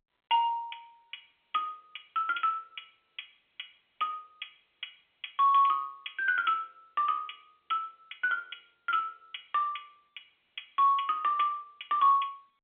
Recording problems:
phone line; 280 Hz to 3.3 kHz, G.711

